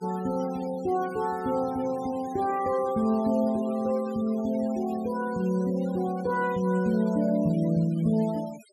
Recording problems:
denoising artefacts; signal-to-artefact ratio 20 dB

